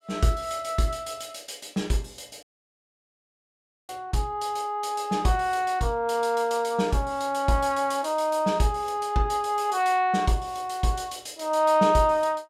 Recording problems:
dropout; at 2.5 s for 1.5 s

